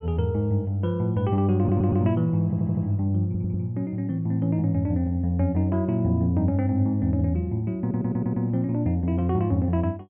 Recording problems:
low-pass filter; nothing above 3.2 kHz
audio stuttering; 4 times, first at 1.5 s

